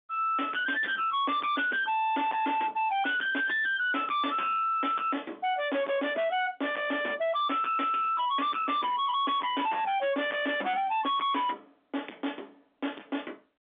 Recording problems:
telephone audio; 240 Hz to 3.7 kHz, G.711
distortion; hard clipping, uneven, signal-to-distortion ratio 7 dB

